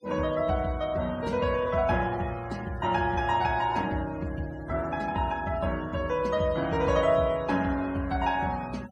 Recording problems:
noise reduction artefacts; signal-to-artefact ratio 21 dB

